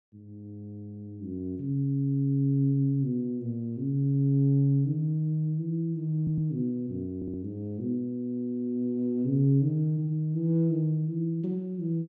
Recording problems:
audio stuttering; at 6 s and at 7 s

